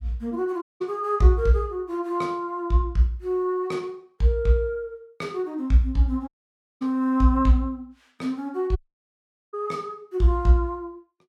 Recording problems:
dropout; at 0.5 s, at 6.5 s for 0.5 s and at 9 s for 1 s

